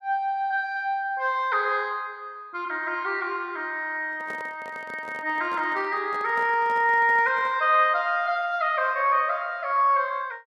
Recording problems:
microphone handling noise; from 4 to 7.5 s; peak -13 dB vs average level

